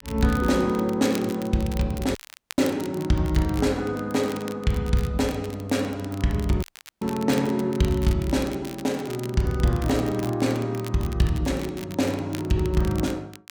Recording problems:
crackle; vinyl, SNR 18 dB
audio cutting out; at 2 s and at 6.5 s

